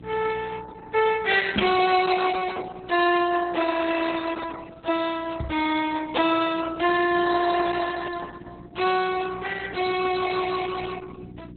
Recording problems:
lossy compression; Speex, then Opus, log-spectral distance 6 dB, nothing above 4 kHz
hum; 60 Hz, harmonics up to 360 Hz, SNR 20 dB
microphone thump; at 1.5 s and at 5.5 s; peak -1 dB vs average level

